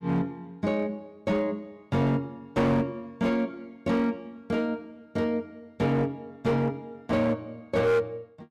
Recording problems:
distorted audio; hard clipping, signal-to-distortion ratio 10 dB

